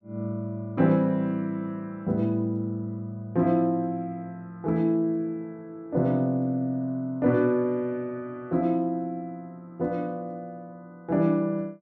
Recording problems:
none

